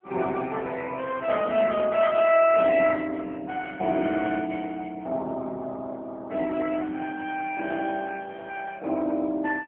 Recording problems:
telephone audio; 220 Hz to 3.1 kHz, AMR-NB

